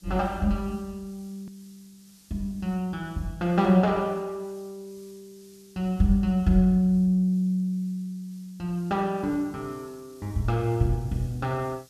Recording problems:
hiss; SNR 29 dB
click at an edit; at 1.5 s

